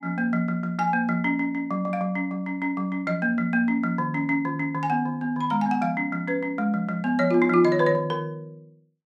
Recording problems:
none

